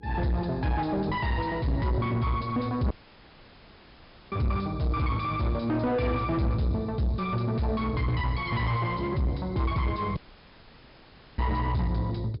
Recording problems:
treble cut off; nothing above 5.5 kHz
distortion; soft clipping, signal-to-distortion ratio 7 dB
hum; 60 Hz, harmonics up to 480 Hz, SNR 26 dB
audio cutting out; at 3 s for 1.5 s and at 10 s for 1 s

